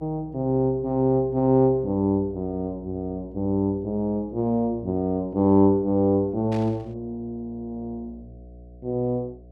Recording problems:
electrical hum; 60 Hz, harmonics up to 720 Hz, SNR 22 dB
static burst; at 6.5 s; peak -14 dB vs average level

